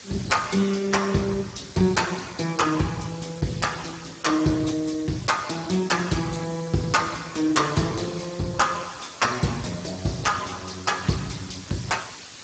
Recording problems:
lossy codec; Speex, log-spectral distance 10 dB, nothing above 7.6 kHz
background hiss; slope +1 dB per octave, SNR 18 dB

